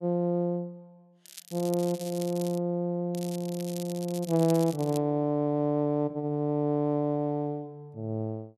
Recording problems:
crackle; from 1.5 to 2.5 s and from 3 to 5 s; loose cable, SNR 15 dB

